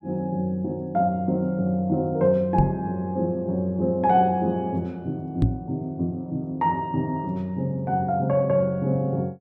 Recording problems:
microphone thump; at 2.5 s and at 5.5 s; peak +8 dB vs average level

